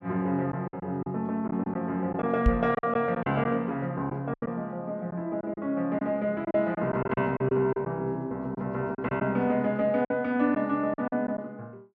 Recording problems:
lost packets; 8% of the sound replaced, filled with silence
microphone thump; at 2.5 s; peak +7 dB vs average level

